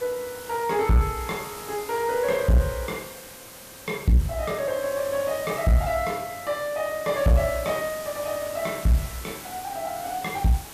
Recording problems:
distorted audio; soft clipping, signal-to-distortion ratio 11 dB
hiss; SNR 13 dB

